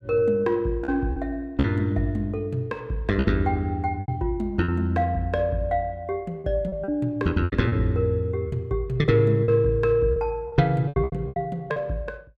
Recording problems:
packet loss; 8% of the sound replaced, filled with repeated pitch periods

